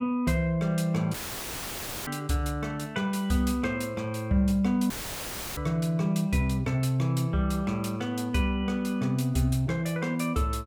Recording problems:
dropout; at 1 s for 1 s and at 5 s for 0.5 s; filled with static

